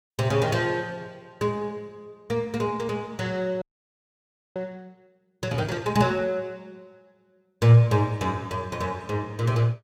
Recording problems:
audio freezing; at 3.5 s for 1 s

